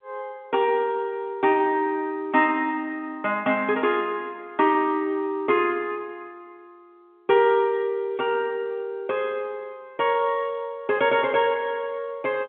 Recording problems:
phone line; 170 Hz to 3.3 kHz, G.711

